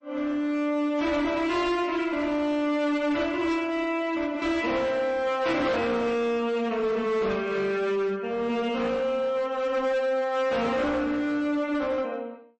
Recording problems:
codec artefacts; AAC, then MP3, log-spectral distance 2 dB, nothing above 8.2 kHz
distortion; hard clipping, signal-to-distortion ratio 11 dB

